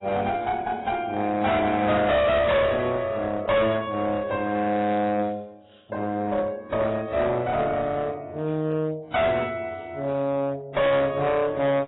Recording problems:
lossy compression; AAC, then AAC, log-spectral distance 2 dB, nothing above 3.8 kHz
distortion; hard clipping, uneven, signal-to-distortion ratio 6 dB

